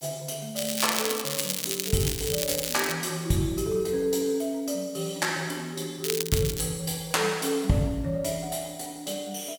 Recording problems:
background hiss; SNR 30 dB
crackling; from 0.5 to 3 s and at 6 s; loose cable, SNR 2 dB

